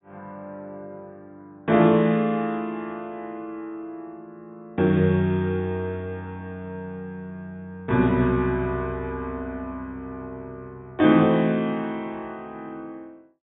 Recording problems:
low-pass filter; nothing above 4 kHz

